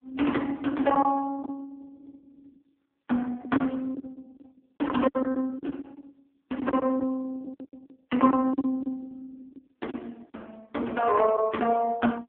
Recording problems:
phone line; 240 Hz to 3.3 kHz, AMR-NB
packet loss; 10% of the sound replaced, filled with silence

